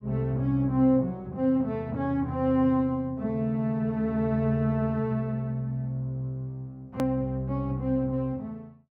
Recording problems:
edit click; at 7 s

